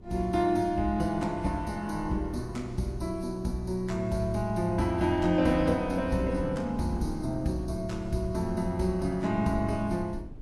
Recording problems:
lossy codec; Vorbis, log-spectral distance 2 dB, nothing above 11.6 kHz
wind on the microphone; below 120 Hz, SNR 15 dB

